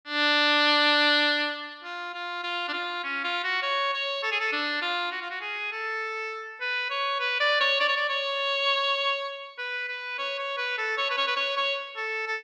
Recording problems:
none

